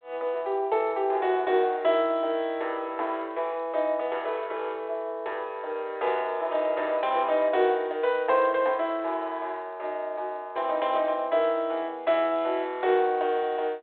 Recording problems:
telephone audio; 320 Hz to 3.7 kHz, G.726

